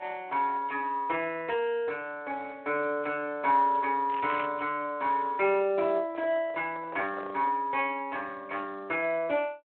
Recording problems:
telephone audio; 240 Hz to 3.2 kHz, Speex
crackle; at 4 s; loose cable, SNR 13 dB
microphone handling noise; from 6 to 7.5 s; peak -7 dB vs average level

